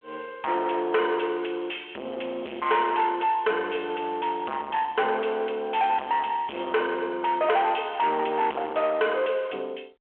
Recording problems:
telephone audio; 300 Hz to 3.3 kHz, G.726
distortion; soft clipping, signal-to-distortion ratio 5 dB

